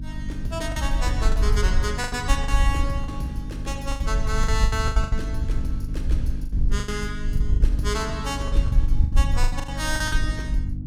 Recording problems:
hum; 50 Hz, harmonics up to 300 Hz, SNR 5 dB
wind noise; below 60 Hz, SNR -3 dB
lost packets; 12% of the sound replaced, filled with the last packet

